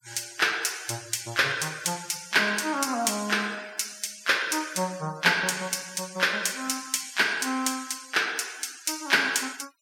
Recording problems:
noise reduction artefacts; signal-to-artefact ratio 20 dB

